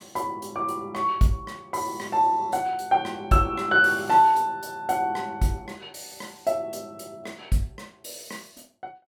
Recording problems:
none

